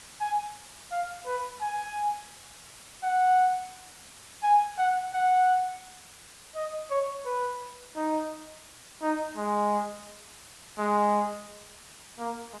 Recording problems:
lossy codec; AAC, log-spectral distance 12 dB
background hiss; slope 0 dB per octave, SNR 19 dB

